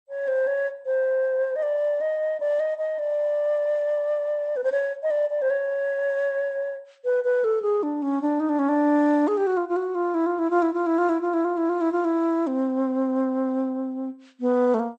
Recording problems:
lossy codec; MP2, log-spectral distance 2 dB

